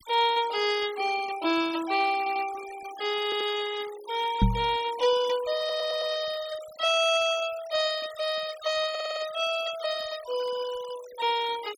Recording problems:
noise reduction artefacts; signal-to-artefact ratio 16 dB
stutter; 4 times, first at 2 s
microphone bump; at 4.5 s; peak +8 dB vs average level

